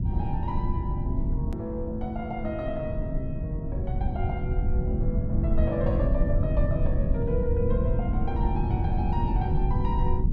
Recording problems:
rumble; below 120 Hz, SNR -4 dB
click at an edit; at 1.5 s

